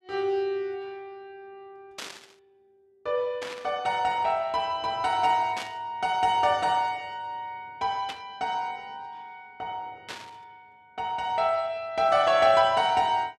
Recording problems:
static burst; 5 times, first at 2 s; peak -6 dB vs average level

